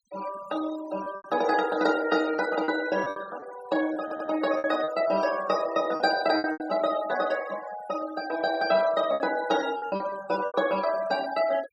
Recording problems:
noise reduction artefacts; signal-to-artefact ratio 15 dB
lost packets; 8% of the sound replaced, filled with repeated pitch periods
audio stuttering; at 4 s

